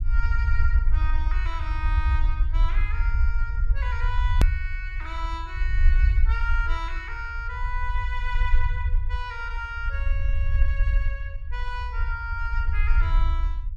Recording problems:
low-frequency rumble; below 60 Hz, SNR -7 dB
hard cut with a click; at 4.5 s

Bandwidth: 13 kHz